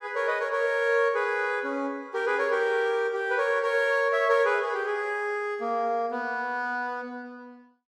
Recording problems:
none

